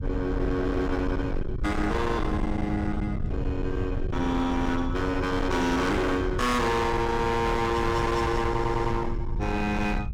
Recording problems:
distorted audio; hard clipping, signal-to-distortion ratio 7 dB
rumble; below 170 Hz, SNR 5 dB
audio stuttering; at 8.5 s

